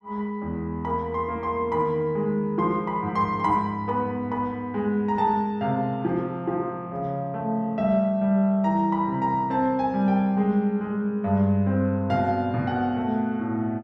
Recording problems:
none

